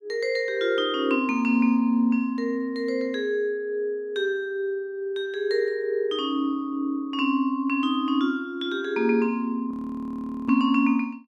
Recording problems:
frozen audio; at 9.5 s for 1 s

